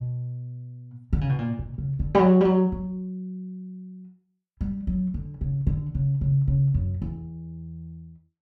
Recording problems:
none

